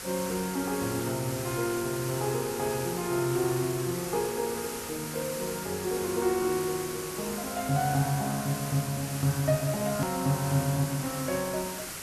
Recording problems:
hiss; slope -1 dB per octave, SNR 6 dB
click at an edit; at 10 s

